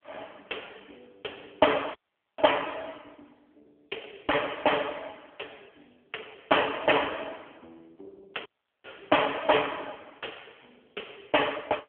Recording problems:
telephone audio; 340 Hz to 3.3 kHz, AMR-NB
dropout; at 2 s and at 8.5 s

